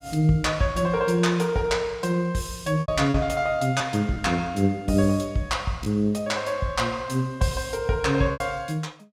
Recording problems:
packet loss; 3% of the sound replaced, filled with repeated pitch periods

